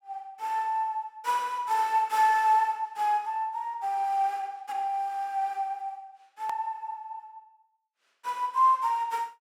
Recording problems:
click at an edit; at 6.5 s

